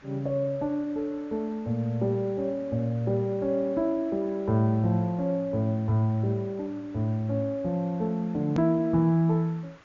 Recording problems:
low-pass filter; nothing above 7.2 kHz
background hiss; SNR 27 dB
hard cut with a click; at 8.5 s

